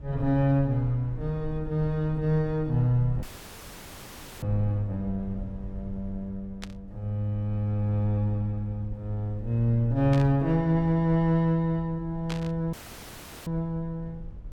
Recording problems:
low-frequency rumble; below 72 Hz, SNR 16 dB
audio cutting out; at 3 s for 1 s and at 13 s for 0.5 s
static burst; at 6.5 s, at 10 s and at 12 s; peak -5 dB vs average level

